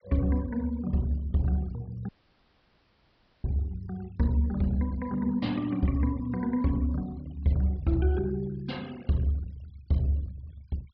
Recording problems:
treble missing; nothing above 5.5 kHz
denoising artefacts; signal-to-artefact ratio 26 dB
audio cutting out; at 2 s for 1.5 s

